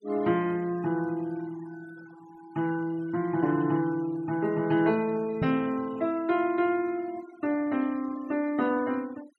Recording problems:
noise reduction artefacts; signal-to-artefact ratio 22 dB
microphone bump; at 5.5 s; peak +2 dB vs average level

